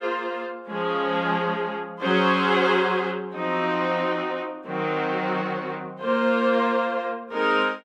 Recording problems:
none

